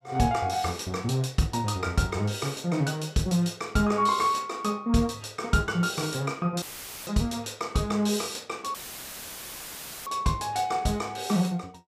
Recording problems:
audio cutting out; at 6.5 s and at 8.5 s for 1.5 s; filled with static

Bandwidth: 15 kHz